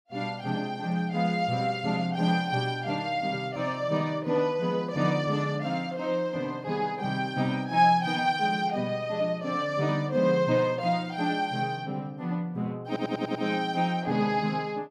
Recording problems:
stutter; at 13 s

